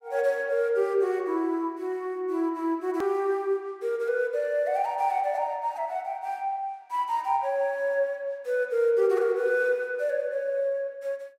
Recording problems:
click at an edit; at 3 s

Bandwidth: 16 kHz